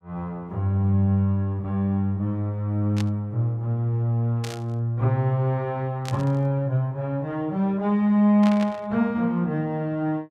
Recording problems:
burst of static; 4 times, first at 3 s; peak -7 dB vs average level

